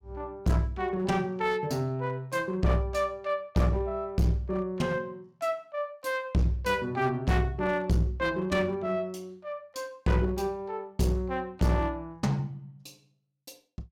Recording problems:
distortion; hard clipping, uneven, signal-to-distortion ratio 9 dB

